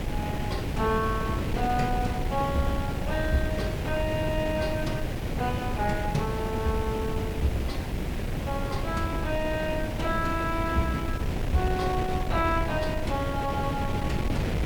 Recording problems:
background hiss; slope +2 dB per octave, SNR 19 dB
wind on the microphone; below 310 Hz, SNR 1 dB

